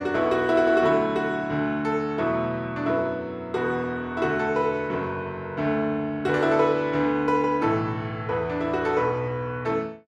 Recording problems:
none

